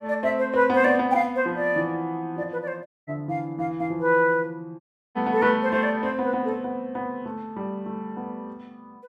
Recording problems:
audio cutting out; at 3 s and at 5 s

